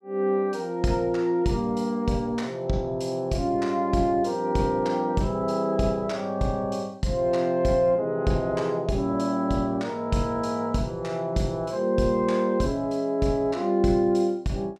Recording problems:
none

